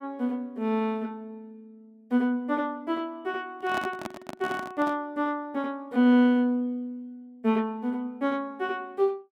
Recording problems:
microphone handling noise; from 3.5 to 5 s; peak -3 dB vs average level

